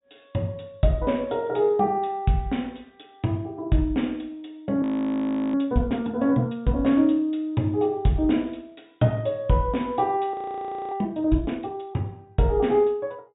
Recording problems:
treble missing; nothing above 4 kHz
frozen audio; at 5 s for 0.5 s and at 10 s for 0.5 s

